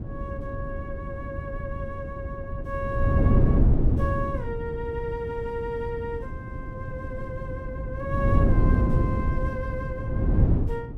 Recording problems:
wind noise; below 170 Hz, SNR -6 dB

